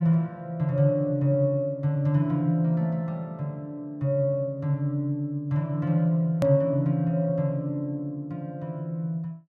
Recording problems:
click at an edit; at 6.5 s

